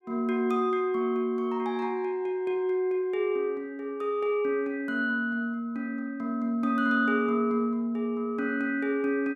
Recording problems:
none

